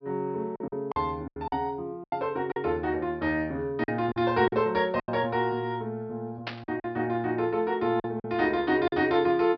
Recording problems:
treble cut off; nothing above 5.5 kHz
packet loss; 8% of the sound replaced, filled with silence
burst of static; at 6.5 s; peak -2 dB vs average level

